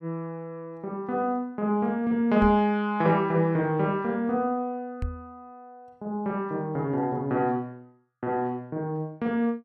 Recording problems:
microphone thump; at 2.5 s and at 5 s; peak -2 dB vs average level

